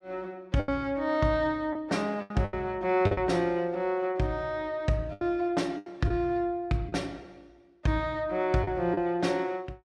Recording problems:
packet loss; 7% of the sound replaced, filled with the last packet

